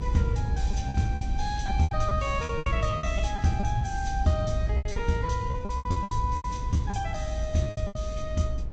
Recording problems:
lossy codec; G.722, then Vorbis, log-spectral distance 2 dB
low-frequency rumble; below 82 Hz, SNR 2 dB
packet loss; 15% of the sound replaced, filled with repeated pitch periods

